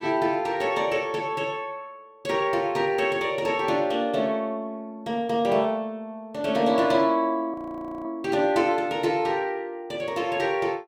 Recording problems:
audio freezing; at 7.5 s for 0.5 s

